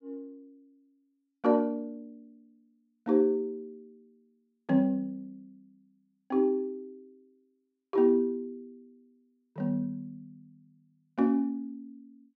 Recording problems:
none

